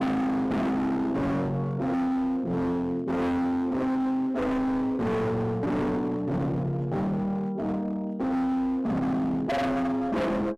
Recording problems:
distortion; hard clipping, signal-to-distortion ratio 6 dB

